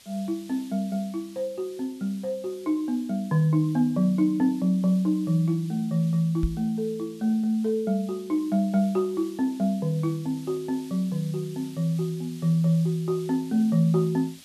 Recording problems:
background hiss; SNR 24 dB
microphone thump; at 6.5 s; peak +2 dB vs average level

